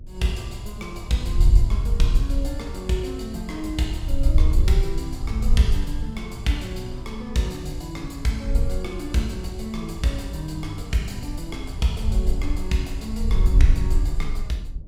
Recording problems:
hum; 60 Hz, harmonics up to 600 Hz, SNR 29 dB
low-frequency rumble; below 110 Hz, SNR 16 dB
wind on the microphone; below 58 Hz, SNR -3 dB

